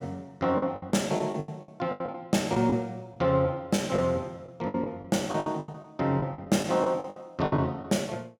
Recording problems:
packet loss; 14% of the sound replaced, filled with the last packet

